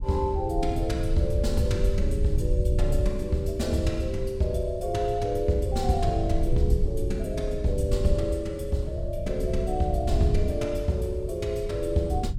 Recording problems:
rumble; below 86 Hz, SNR 3 dB

